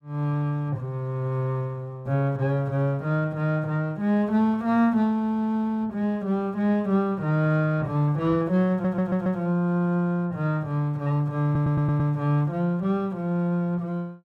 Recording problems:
stutter; at 8.5 s and at 11 s

